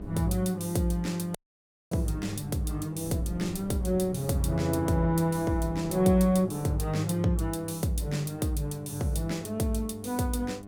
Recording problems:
hum; 50 Hz, harmonics up to 1.5 kHz, SNR 16 dB
wind noise; below 270 Hz, SNR 19 dB
dropout; at 1.5 s for 0.5 s

